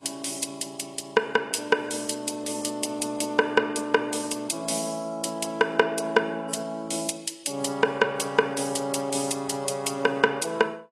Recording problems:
codec artefacts; AAC, log-spectral distance 5 dB, nothing above 11 kHz

